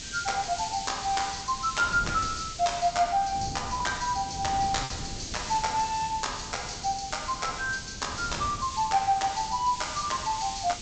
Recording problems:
low-pass filter; nothing above 8 kHz
background hiss; SNR 10 dB
wind on the microphone; below 260 Hz, SNR 14 dB
lost packets; 1.3% of the sound replaced, filled with repeated pitch periods

